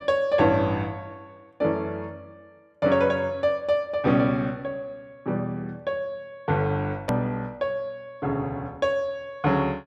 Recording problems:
hard cut with a click; at 7 s

